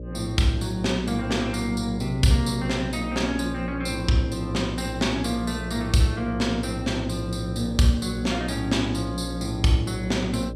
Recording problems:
electrical hum; 60 Hz, harmonics up to 600 Hz, SNR 9 dB

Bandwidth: 15.5 kHz